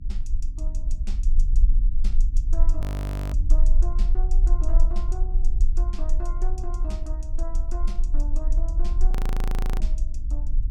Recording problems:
hum; 50 Hz, harmonics up to 300 Hz, SNR 11 dB
low-frequency rumble; below 40 Hz, strongest tone 22 Hz, SNR -15 dB
frozen audio; at 3 s for 0.5 s and at 9 s for 0.5 s

